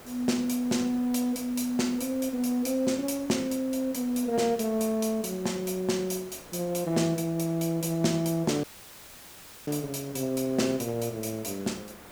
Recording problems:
background hiss; slope -5 dB per octave, SNR 18 dB
dropout; at 8.5 s for 1 s

